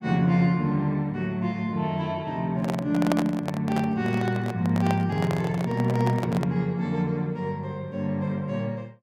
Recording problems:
microphone handling noise; from 2.5 to 6.5 s; peak +4 dB vs average level

